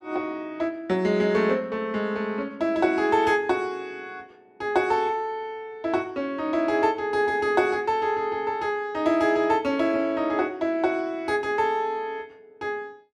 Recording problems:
none

